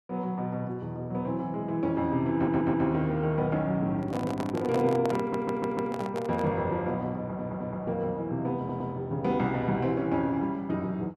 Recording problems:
stutter; 4 times, first at 2.5 s
microphone handling noise; from 4 to 6.5 s; peak -2 dB vs average level

